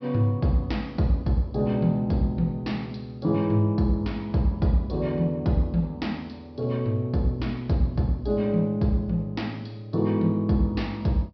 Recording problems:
treble cut off; nothing above 5.5 kHz

